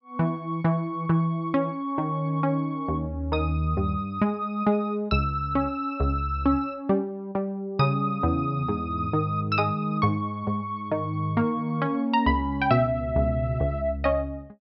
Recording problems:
treble missing; nothing above 5.5 kHz

